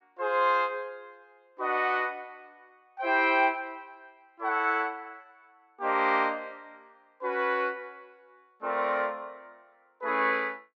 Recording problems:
none

